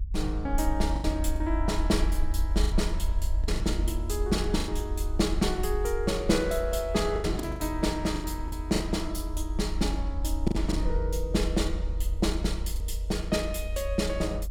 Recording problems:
rumble; below 54 Hz, SNR 2 dB
lost packets; 6% of the sound replaced, filled with the last packet

